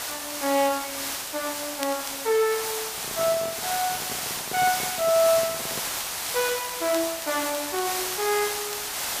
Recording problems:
hiss; SNR 2 dB
crackle; vinyl, SNR 20 dB
handling noise; from 3 to 6 s; peak -7 dB vs average level

